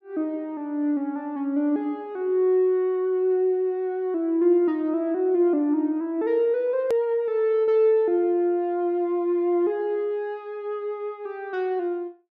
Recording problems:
hard cut with a click; at 7 s

